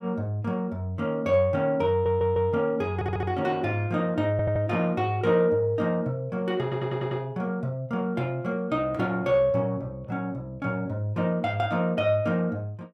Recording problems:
audio stuttering; 4 times, first at 2 s

